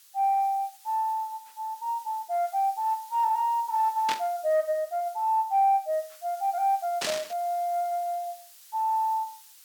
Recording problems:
hiss; slope +5 dB per octave, SNR 22 dB
burst of static; at 4 s and at 7 s; peak +2 dB vs average level

